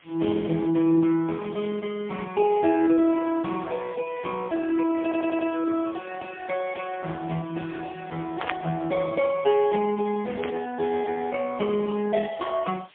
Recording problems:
phone line; 220 Hz to 3.3 kHz, AMR-NB, then MP3
background hiss; SNR 27 dB
audio stuttering; at 5 s
static burst; at 8.5 s and at 10 s; peak -5 dB vs average level

